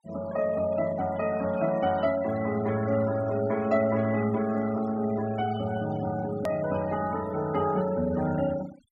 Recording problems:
denoising artefacts; signal-to-artefact ratio 16 dB
hard cut with a click; at 6.5 s

